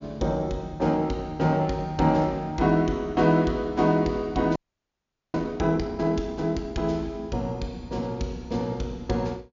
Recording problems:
low-pass filter; nothing above 7.1 kHz
frozen audio; at 4.5 s for 1 s

